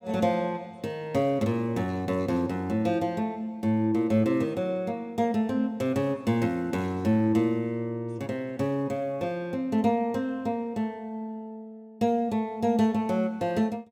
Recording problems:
none

